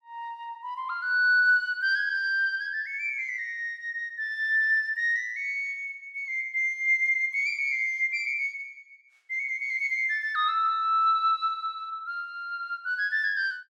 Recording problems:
none

